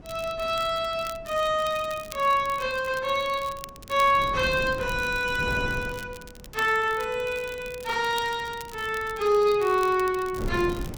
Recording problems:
wind noise; below 290 Hz, SNR 16 dB
crackling; vinyl, SNR 20 dB

